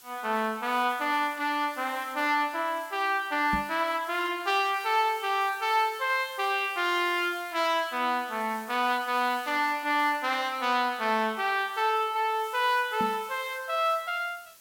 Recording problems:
hiss; slope +2 dB per octave, SNR 21 dB
knock on the microphone; at 3.5 s and at 13 s; peak -2 dB vs average level

